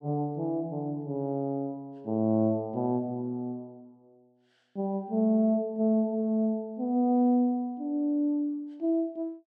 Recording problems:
none

